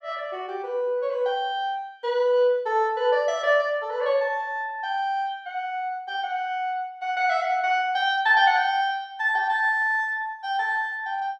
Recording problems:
none

